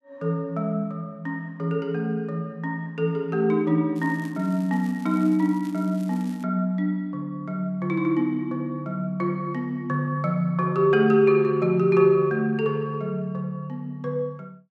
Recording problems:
crackle; from 4 to 6.5 s; loose cable, SNR 27 dB

